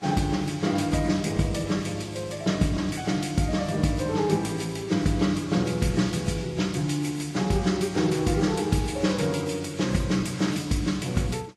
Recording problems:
lossy codec; Vorbis, then Vorbis, log-spectral distance 4 dB, nothing above 12 kHz

